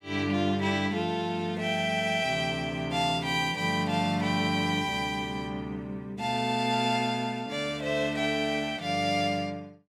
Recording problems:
none

